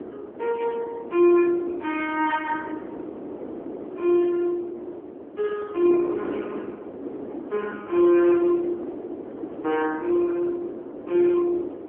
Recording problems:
phone line; 240 Hz to 3.4 kHz, AMR-NB
wind on the microphone; below 480 Hz, SNR 12 dB

